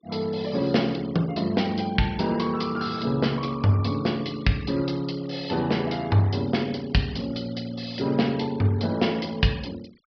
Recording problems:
treble cut off; nothing above 5.5 kHz
noise reduction artefacts; signal-to-artefact ratio 22 dB

